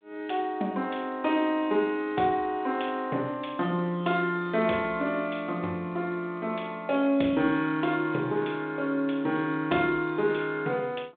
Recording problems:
phone line; 240 Hz to 3.7 kHz, G.726

